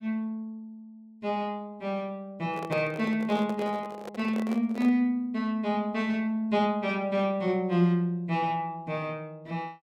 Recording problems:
microphone handling noise; from 2.5 to 5 s; peak -2 dB vs average level

